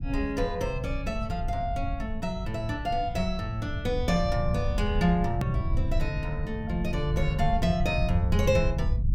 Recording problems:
rumble; below 98 Hz, SNR 3 dB
edit click; at 5.5 s

